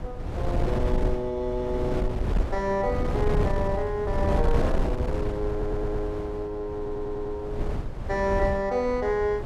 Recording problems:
wind noise; below 170 Hz, SNR 1 dB
stutter; at 5.5 s and at 7 s

